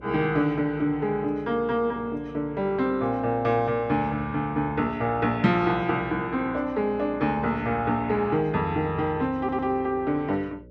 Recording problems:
hum; 60 Hz, harmonics up to 600 Hz, SNR 22 dB
stutter; at 9.5 s

